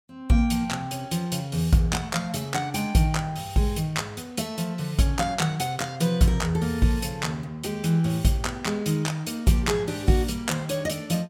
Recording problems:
none

